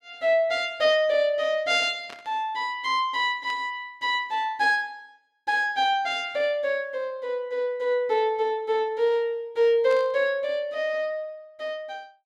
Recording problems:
static burst; at 2 s, at 3.5 s and at 10 s; peak -12 dB vs average level

